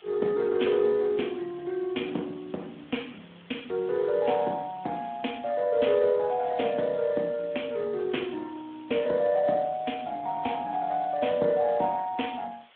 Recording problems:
phone line; 220 Hz to 3.4 kHz, Speex
hiss; SNR 26 dB

